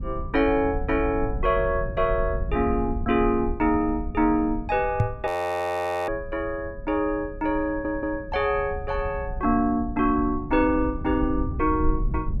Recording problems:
rumble; below 80 Hz, SNR 9 dB
knock on the microphone; at 5 s; peak +6 dB vs average level
audio freezing; at 5.5 s for 1 s
audio stuttering; at 7.5 s

